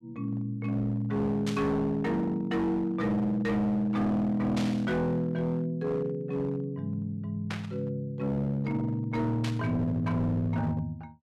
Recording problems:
distortion; hard clipping, signal-to-distortion ratio 10 dB
burst of static; 4 times, first at 1.5 s; peak -4 dB vs average level

